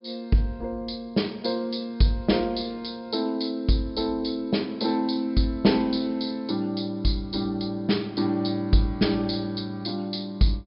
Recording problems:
low-pass filter; nothing above 5.5 kHz

